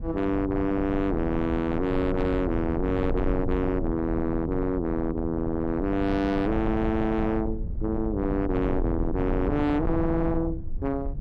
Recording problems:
distortion; soft clipping, signal-to-distortion ratio 7 dB
rumble; below 110 Hz, SNR 7 dB

